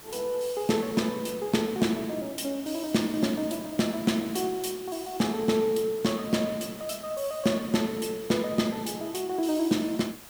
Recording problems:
hiss; slope -2 dB per octave, SNR 17 dB

